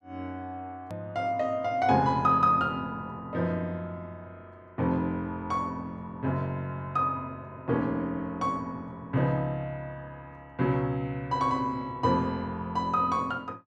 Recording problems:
click at an edit; at 1 s

